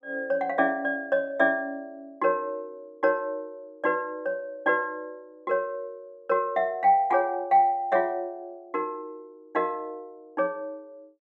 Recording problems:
none

